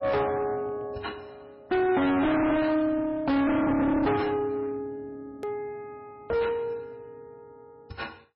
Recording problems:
lossy codec; MP3, log-spectral distance 2 dB
distortion; hard clipping, uneven, signal-to-distortion ratio 5 dB
edit click; at 5.5 s

